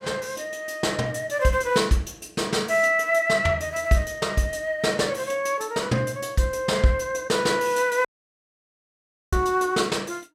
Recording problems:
audio cutting out; at 8 s for 1.5 s

